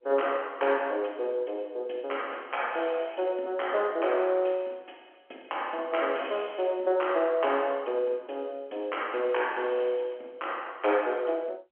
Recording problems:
phone line; 260 Hz to 3.3 kHz, G.711

